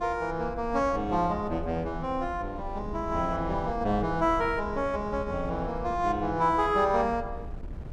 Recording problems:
wind noise; below 140 Hz, SNR 13 dB

